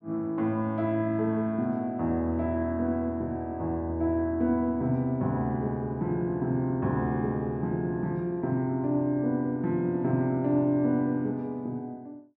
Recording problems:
none

